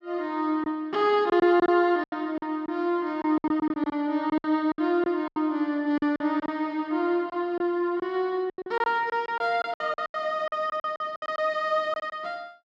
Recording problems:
lost packets; 13% of the sound replaced, filled with silence

